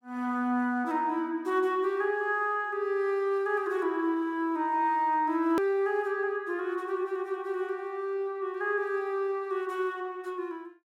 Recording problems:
edit click; at 5.5 s

